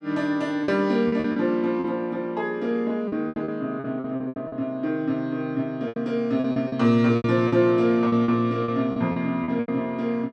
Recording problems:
lost packets; 12% of the sound replaced, filled with repeated pitch periods

